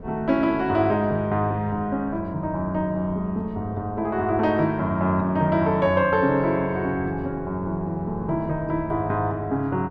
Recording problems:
wind on the microphone; below 330 Hz, SNR 18 dB

